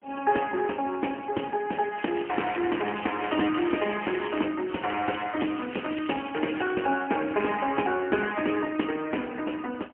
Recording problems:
telephone audio; 240 Hz to 3.1 kHz, AMR-NB, then MP3
crackle; from 2 to 4.5 s and from 4.5 to 6.5 s; loose cable, SNR 13 dB

